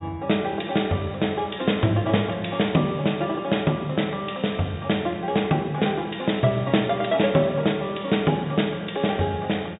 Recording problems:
treble cut off; nothing above 4 kHz

